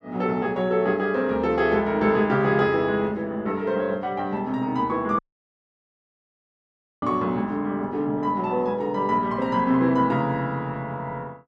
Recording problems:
audio cutting out; at 5 s for 2 s

